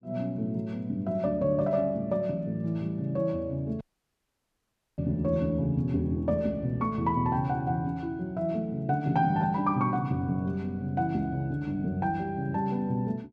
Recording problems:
audio cutting out; at 4 s for 1 s

